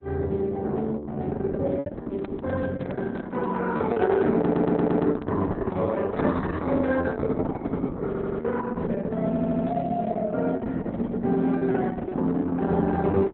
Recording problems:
lossy codec; Opus, log-spectral distance 3 dB, nothing above 4 kHz
packet loss; 2% of the sound replaced, filled with repeated pitch periods
microphone handling noise; from 2 to 6 s; peak -1 dB vs average level
stutter; at 4.5 s, at 8 s and at 9.5 s

